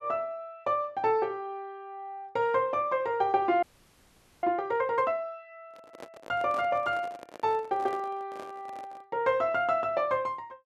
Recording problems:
frozen audio; at 3.5 s for 1 s
handling noise; from 5.5 to 9 s; peak -9 dB vs average level

